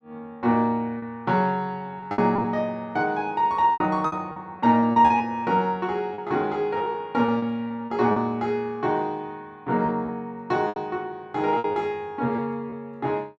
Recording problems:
packet loss; 8% of the sound replaced, filled with repeated pitch periods

